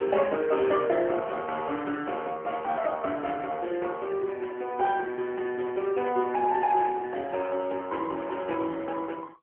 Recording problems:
telephone audio; 260 Hz to 3.4 kHz, AMR-NB

